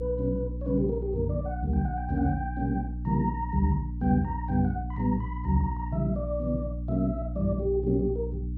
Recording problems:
electrical hum; 60 Hz, harmonics up to 300 Hz, SNR 5 dB

